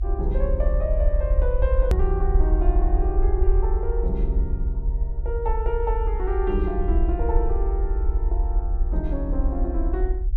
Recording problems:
low-frequency rumble; below 58 Hz, SNR -5 dB
hard cut with a click; at 2 s

